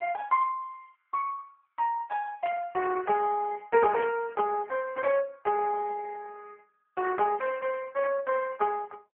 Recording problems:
telephone audio; 130 Hz to 2.6 kHz, AMR-NB
burst of static; at 2.5 s, at 4 s and at 8 s; peak -7 dB vs average level

